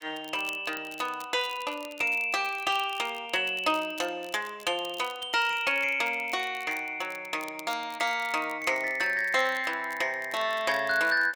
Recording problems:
crackling; vinyl, SNR 21 dB

